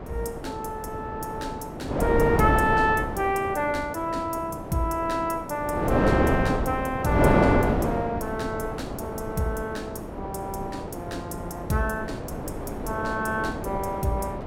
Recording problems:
wind noise; below 630 Hz, SNR 1 dB

